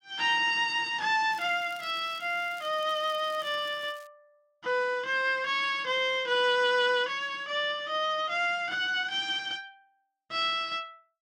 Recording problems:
crackling; from 1.5 to 4 s; loose cable, SNR 26 dB

